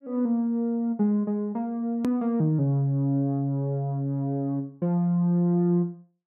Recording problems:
hard cut with a click; at 2 s

